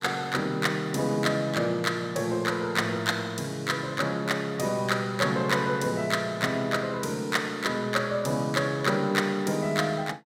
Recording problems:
none

